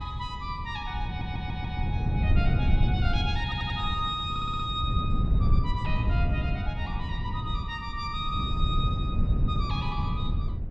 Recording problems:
wind noise; below 130 Hz, SNR -4 dB
audio stuttering; at 1 s, at 3.5 s and at 4.5 s

